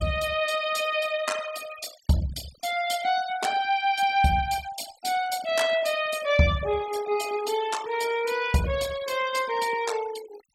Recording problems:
noise reduction artefacts; signal-to-artefact ratio 14 dB

